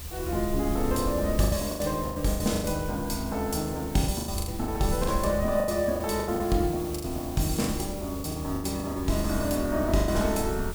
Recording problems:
background hiss; slope -1 dB per octave, SNR 14 dB
low-frequency rumble; below 82 Hz, SNR 9 dB
packet loss; 13% of the sound replaced, filled with the last packet

